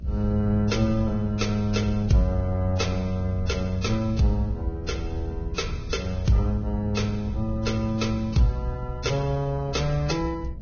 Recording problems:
lossy codec; Vorbis, log-spectral distance 2 dB, nothing above 6.5 kHz
mains hum; 60 Hz, harmonics up to 660 Hz, SNR 27 dB
low-frequency rumble; below 88 Hz, SNR 9 dB

